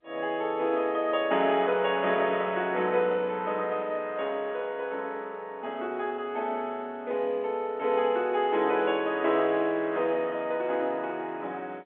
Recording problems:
telephone audio; 240 Hz to 3.4 kHz, G.711

